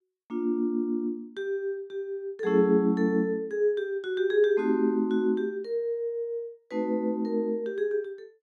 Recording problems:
none

